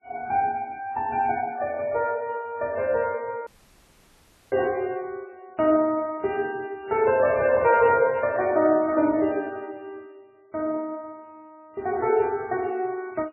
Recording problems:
codec artefacts; MP3, log-spectral distance 2 dB, nothing above 2.4 kHz
audio cutting out; at 3.5 s for 1 s

